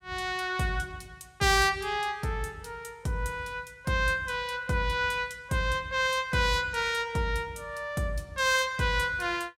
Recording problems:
none

